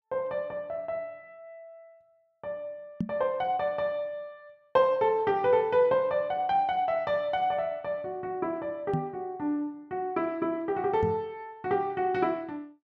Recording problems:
microphone thump; at 3 s, at 9 s and at 11 s; peak +2 dB vs average level

